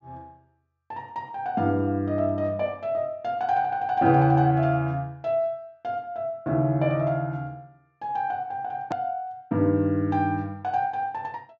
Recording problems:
low-pass filter; nothing above 8 kHz
hard cut with a click; at 9 s

